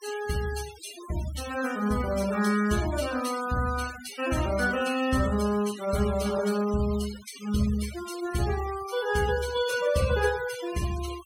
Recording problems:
denoising artefacts; signal-to-artefact ratio 12 dB

